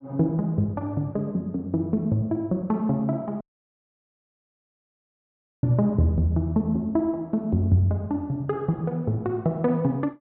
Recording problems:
treble cut off; nothing above 4.4 kHz
audio cutting out; at 3.5 s for 2 s

